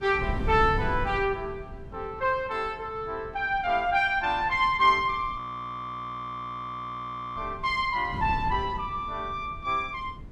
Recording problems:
wind on the microphone; below 170 Hz, SNR 12 dB
frozen audio; at 5.5 s for 2 s

